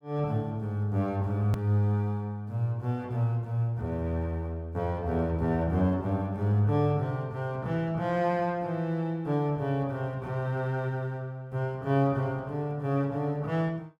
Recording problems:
click at an edit; at 1.5 s

